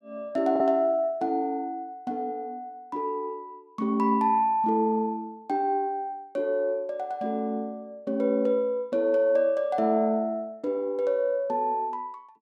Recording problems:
packet loss; 0.3% of the sound replaced, filled with the last packet

